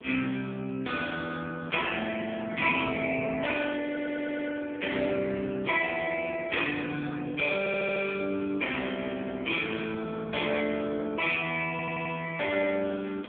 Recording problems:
phone line; 260 Hz to 3.3 kHz, AMR-NB
wind noise; below 590 Hz, SNR 22 dB
audio stuttering; at 4 s, at 7.5 s and at 12 s

